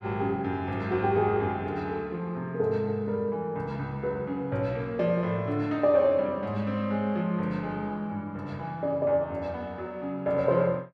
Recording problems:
none

